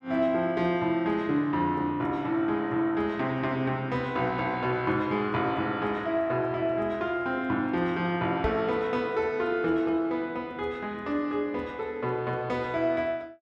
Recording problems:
knock on the microphone; at 8.5 s; peak 0 dB vs average level

